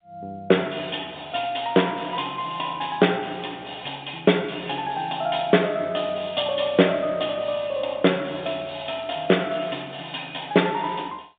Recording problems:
phone line; 220 Hz to 3.7 kHz, G.711

